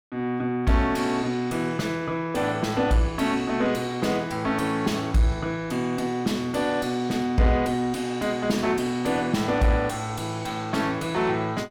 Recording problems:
distorted audio; soft clipping, signal-to-distortion ratio 11 dB

